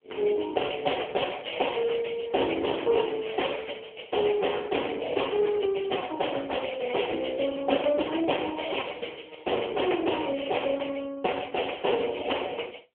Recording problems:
phone line; 300 Hz to 3.3 kHz, AMR-NB

